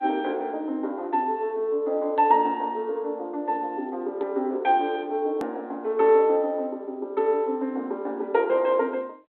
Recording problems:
telephone audio; 240 Hz to 3.8 kHz, G.726
hard cut with a click; at 5.5 s

